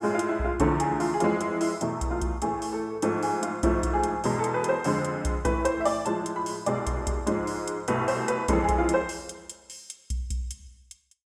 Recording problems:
none

